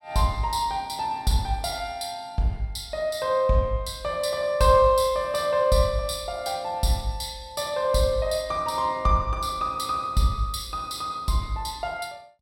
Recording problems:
none

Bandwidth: 16.5 kHz